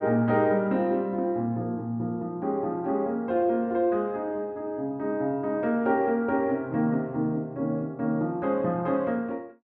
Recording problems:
none

